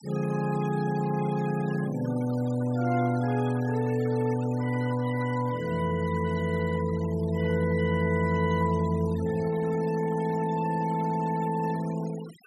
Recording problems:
denoising artefacts; signal-to-artefact ratio 18 dB

